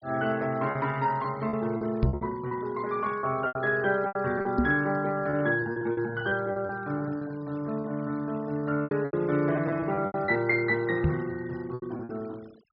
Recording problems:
treble cut off; nothing above 5.5 kHz
denoising artefacts; signal-to-artefact ratio 23 dB
lost packets; 11% of the sound replaced, filled with repeated pitch periods
microphone thump; at 2 s, at 4.5 s and at 11 s; peak +7 dB vs average level

